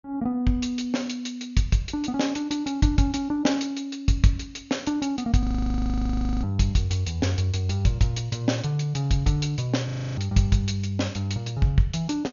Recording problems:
low-pass filter; nothing above 6.9 kHz
audio freezing; at 5.5 s for 1 s and at 10 s

